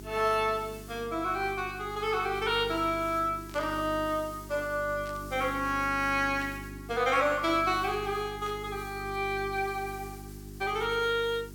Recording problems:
mains hum; 50 Hz, harmonics up to 400 Hz, SNR 15 dB
background hiss; SNR 22 dB
burst of static; 4 times, first at 3.5 s; peak -13 dB vs average level

